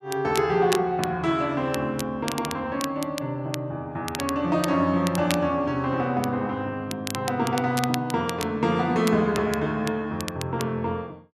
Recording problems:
crackling; vinyl, SNR 11 dB

